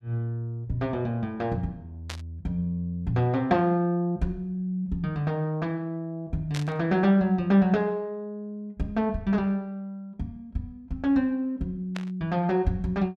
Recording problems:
burst of static; at 2 s, at 6.5 s and at 12 s; peak -5 dB vs average level

